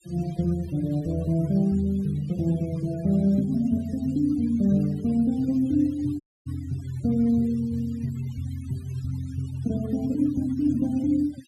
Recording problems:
denoising artefacts; signal-to-artefact ratio 24 dB
audio cutting out; at 6 s

